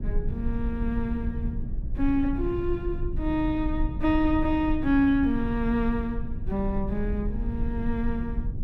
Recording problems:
rumble; below 74 Hz, SNR 5 dB

